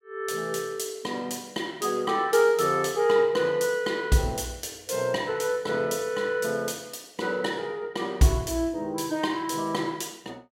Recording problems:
none

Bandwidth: 16 kHz